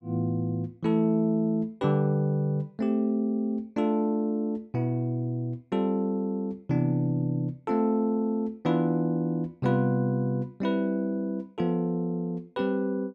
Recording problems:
none

